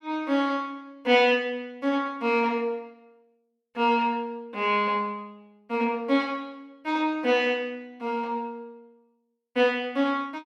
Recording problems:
none

